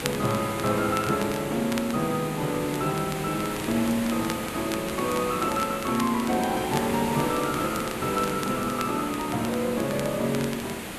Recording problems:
hiss; SNR 6 dB
crackle; vinyl, SNR 14 dB

